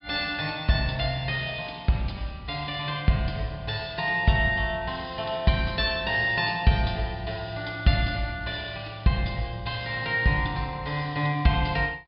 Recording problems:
treble missing; nothing above 5 kHz

